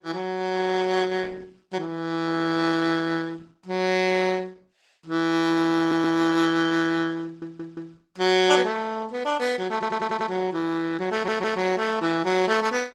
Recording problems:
codec artefacts; Opus, log-spectral distance 3 dB, nothing above 17.1 kHz
audio stuttering; 4 times, first at 6 s

